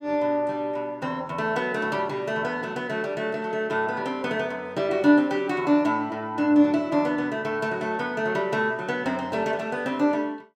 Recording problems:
none

